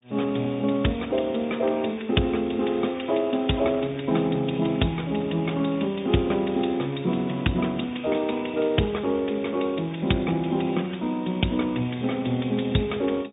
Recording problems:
treble cut off; nothing above 3.7 kHz
codec artefacts; Speex, log-spectral distance 5 dB

